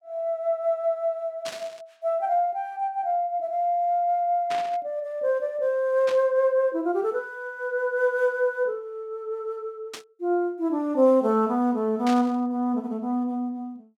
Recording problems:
static burst; 5 times, first at 1.5 s; peak -6 dB vs average level

